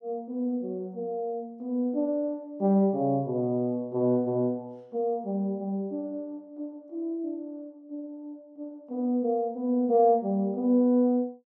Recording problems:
none

